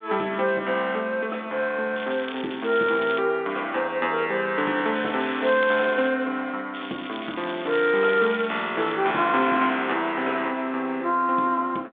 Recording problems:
phone line; 220 Hz to 3.6 kHz, G.726
crackling; from 2 to 3 s, from 5 to 6 s and from 6.5 to 9 s; loose cable, SNR 15 dB

